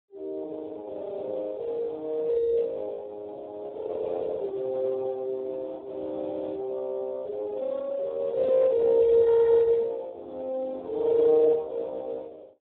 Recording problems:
telephone audio; 340 Hz to 2.3 kHz, Speex

